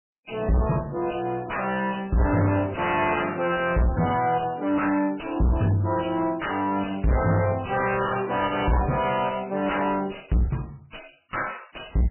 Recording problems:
codec artefacts; MP3, log-spectral distance 7 dB, nothing above 2.9 kHz
distortion; soft clipping, signal-to-distortion ratio 6 dB

